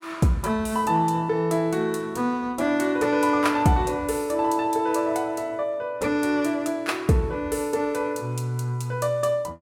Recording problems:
none

